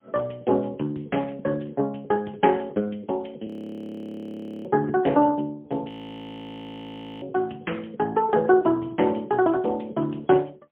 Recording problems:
phone line; 190 Hz to 3.3 kHz, AMR-NB, then MP3
audio freezing; at 3.5 s for 1 s and at 6 s for 1.5 s

